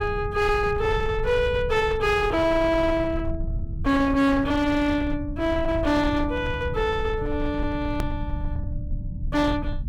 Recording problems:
distortion; hard clipping, uneven, signal-to-distortion ratio 12 dB
rumble; below 110 Hz, SNR 9 dB
click at an edit; at 8 s

